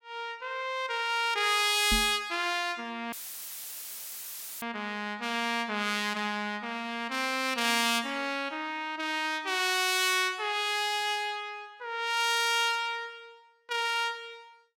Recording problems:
microphone thump; at 2 s; peak -1 dB vs average level
dropout; at 3 s for 1.5 s; filled with static

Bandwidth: 16.5 kHz